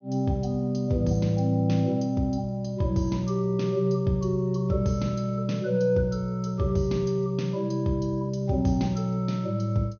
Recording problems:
low-pass filter; nothing above 6.5 kHz

